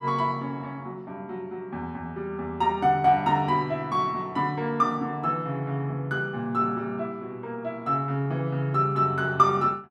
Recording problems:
none

